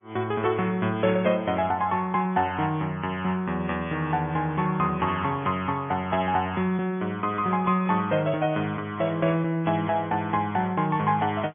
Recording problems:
low-pass filter; nothing above 3.4 kHz
lossy compression; AAC, log-spectral distance 2 dB

